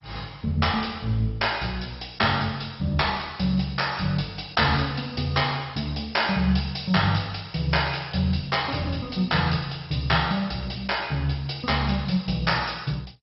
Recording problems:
lossy codec; MP2, log-spectral distance 8 dB, nothing above 5.5 kHz

